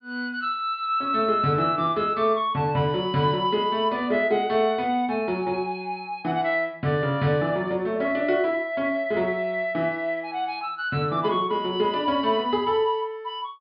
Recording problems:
treble missing; nothing above 5.2 kHz

